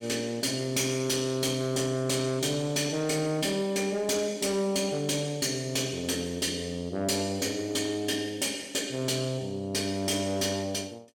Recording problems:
distorted audio; soft clipping, signal-to-distortion ratio 12 dB

